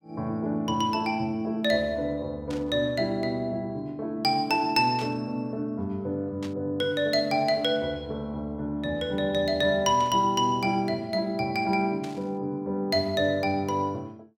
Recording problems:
static burst; 5 times, first at 2.5 s; peak -10 dB vs average level

